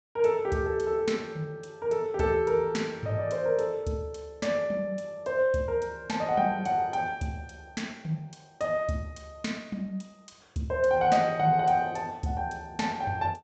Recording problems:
treble missing; nothing above 8 kHz

